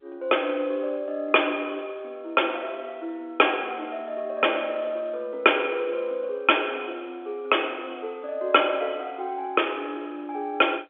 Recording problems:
phone line; 280 Hz to 3.5 kHz, G.711

